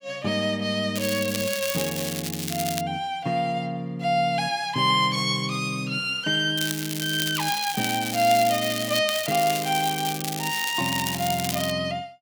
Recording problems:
crackle; from 1 to 3 s, from 6.5 to 9 s and from 9 to 12 s; loose cable, SNR 6 dB

